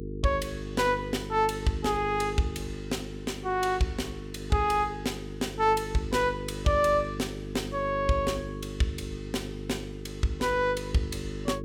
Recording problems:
electrical hum; 50 Hz, harmonics up to 450 Hz, SNR 9 dB

